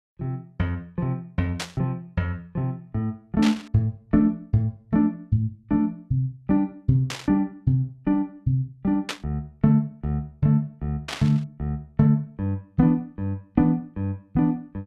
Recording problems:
static burst; 5 times, first at 1.5 s; peak +1 dB vs average level

